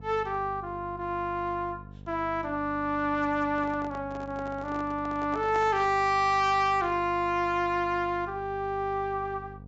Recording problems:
treble cut off; nothing above 8 kHz
distorted audio; hard clipping, uneven, signal-to-distortion ratio 10 dB
hum; 50 Hz, harmonics up to 750 Hz, SNR 17 dB
microphone handling noise; from 3.5 to 6 s; peak -6 dB vs average level

